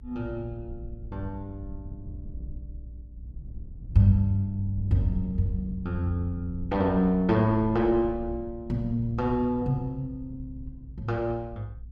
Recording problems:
low-frequency rumble; below 86 Hz, SNR 14 dB

